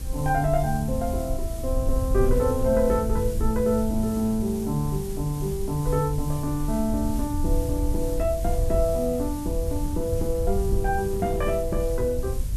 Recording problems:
hiss; slope +1 dB per octave, SNR 16 dB
rumble; below 74 Hz, SNR 5 dB
wind noise; below 130 Hz, SNR 11 dB

